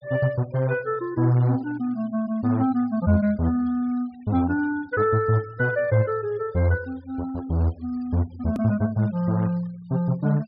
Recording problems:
treble missing; nothing above 5.5 kHz
noise reduction artefacts; signal-to-artefact ratio 28 dB
edit click; at 8.5 s

